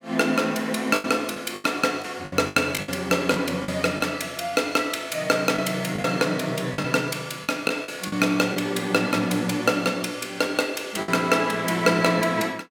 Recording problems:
packet loss; 7% of the sound replaced, filled with the last packet

